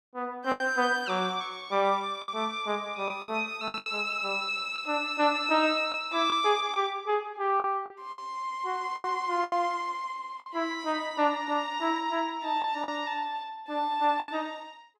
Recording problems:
lost packets; 6% of the sound replaced, filled with the last packet

